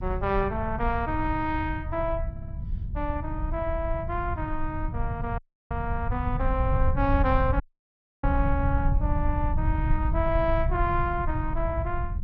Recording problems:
lossy compression; Opus, then MP2, log-spectral distance 2 dB
rumble; below 92 Hz, SNR 1 dB
audio stuttering; at 2.5 s
dropout; at 5.5 s and at 7.5 s for 0.5 s

